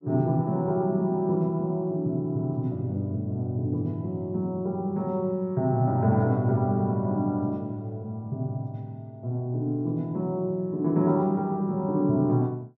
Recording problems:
none

